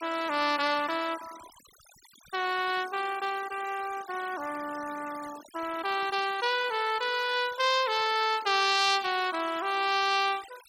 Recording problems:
denoising artefacts; signal-to-artefact ratio 16 dB

